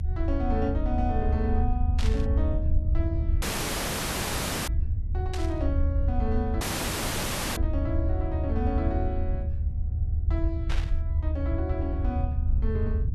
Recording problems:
rumble; below 78 Hz, SNR -5 dB
burst of static; at 2 s, at 5.5 s and at 11 s; peak 0 dB vs average level
dropout; at 3.5 s for 1.5 s and at 6.5 s for 1 s

